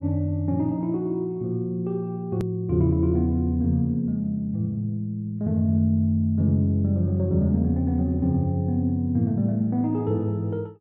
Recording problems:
hard cut with a click; at 2.5 s

